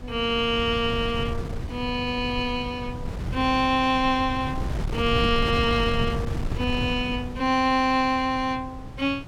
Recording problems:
wind noise; below 180 Hz, SNR 8 dB

